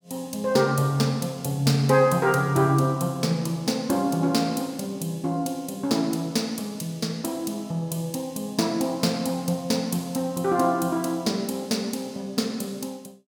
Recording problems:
none

